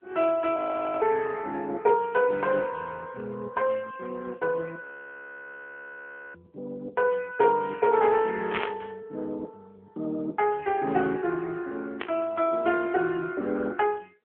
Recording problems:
telephone audio; 280 Hz to 3.2 kHz, AMR-NB
audio freezing; at 0.5 s and at 5 s for 1.5 s
static burst; at 8.5 s and at 12 s; peak +1 dB vs average level

